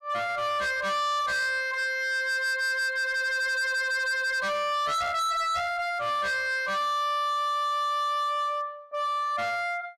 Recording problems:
distortion; hard clipping, signal-to-distortion ratio 8 dB

